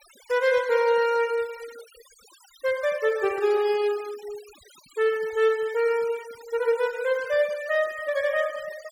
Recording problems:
noise reduction artefacts; signal-to-artefact ratio 20 dB

